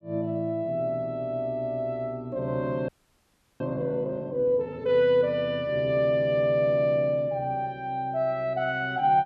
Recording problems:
audio freezing; at 3 s for 0.5 s

